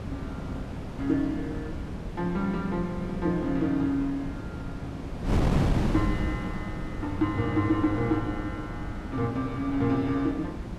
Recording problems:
wind noise; below 290 Hz, SNR 4 dB

